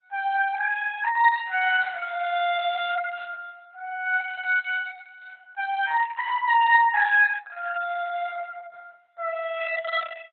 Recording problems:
codec artefacts; Opus, log-spectral distance 3 dB, nothing above 3.5 kHz

